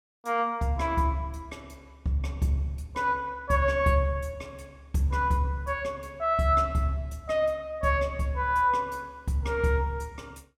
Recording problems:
none

